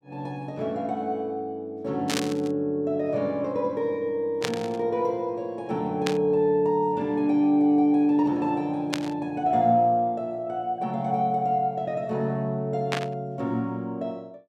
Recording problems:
static burst; 5 times, first at 2 s; peak +1 dB vs average level

